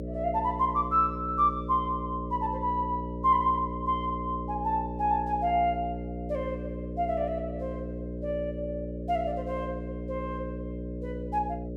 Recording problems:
hum; 60 Hz, harmonics up to 600 Hz, SNR 7 dB

